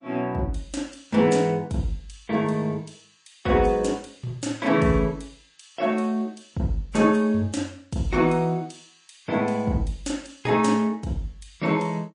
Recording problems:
codec artefacts; MP3, log-spectral distance 3 dB, nothing above 8.2 kHz

